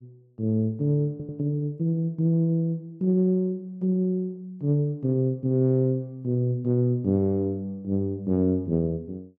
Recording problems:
audio stuttering; at 1 s

